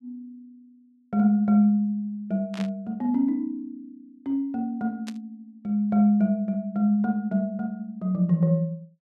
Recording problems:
burst of static; at 2.5 s and at 5 s; peak -10 dB vs average level

